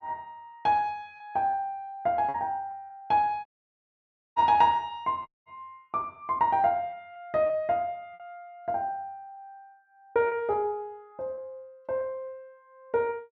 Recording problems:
packet loss; 5% of the sound replaced, filled with repeated pitch periods
audio cutting out; at 3.5 s for 1 s and at 5.5 s

